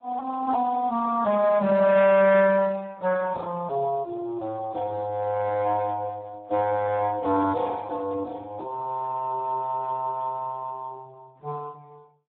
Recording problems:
telephone audio; 260 Hz to 2.7 kHz, Speex

